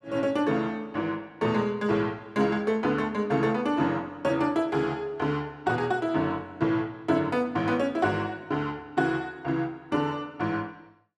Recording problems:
none

